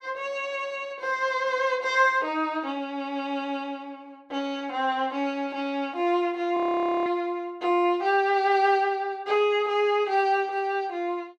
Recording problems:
audio freezing; at 6.5 s

